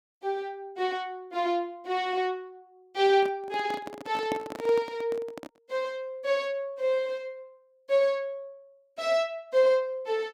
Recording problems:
microphone handling noise; from 3 to 5.5 s; peak 0 dB vs average level

